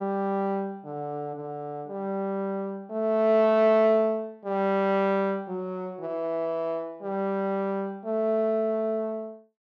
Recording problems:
none

